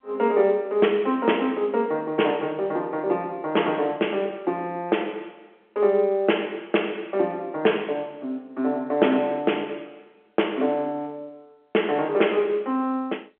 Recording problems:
phone line; 280 Hz to 3.3 kHz, G.711

